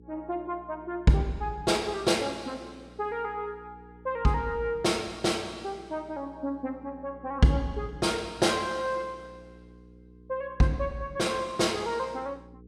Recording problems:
hum; 60 Hz, harmonics up to 480 Hz, SNR 23 dB

